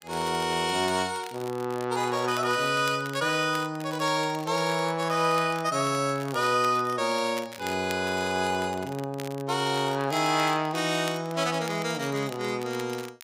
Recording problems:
crackling; vinyl, SNR 18 dB

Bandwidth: 15.5 kHz